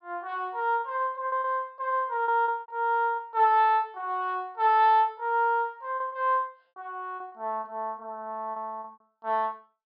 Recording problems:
low-pass filter; nothing above 5.5 kHz
lost packets; 7% of the sound replaced, filled with repeated pitch periods

